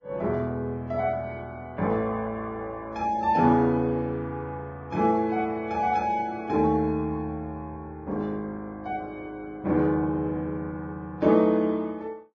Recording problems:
lossy codec; Vorbis, log-spectral distance 2 dB

